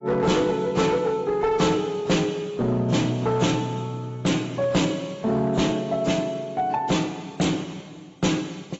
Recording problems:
lossy compression; AAC, log-spectral distance 3 dB, nothing above 7.6 kHz
distorted audio; hard clipping, signal-to-distortion ratio 11 dB

